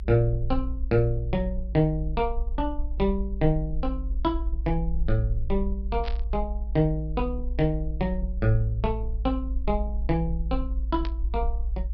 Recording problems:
low-pass filter; nothing above 5.5 kHz
low-frequency rumble; below 56 Hz, SNR 3 dB
static burst; at 6 s and at 11 s; peak -6 dB vs average level

